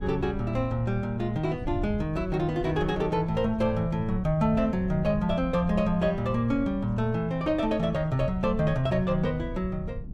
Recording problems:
wind on the microphone; below 110 Hz, SNR 11 dB

